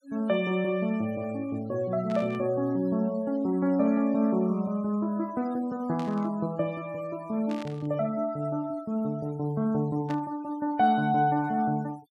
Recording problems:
denoising artefacts; signal-to-artefact ratio 25 dB
burst of static; 4 times, first at 2 s; peak -11 dB vs average level

